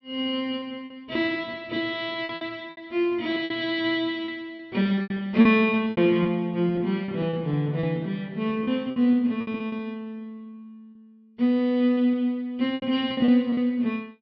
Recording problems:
low-pass filter; nothing above 5.5 kHz
lost packets; 11% of the sound replaced, filled with repeated pitch periods

